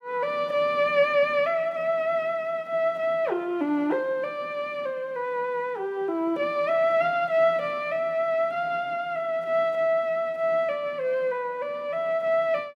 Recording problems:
none

